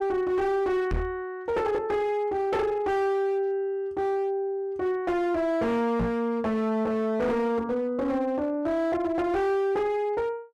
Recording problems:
distorted audio; hard clipping, signal-to-distortion ratio 10 dB
knock on the microphone; at 1 s and at 6 s; peak +2 dB vs average level

